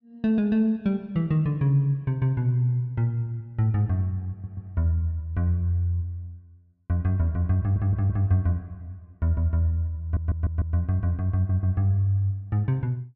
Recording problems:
stutter; 4 times, first at 4.5 s

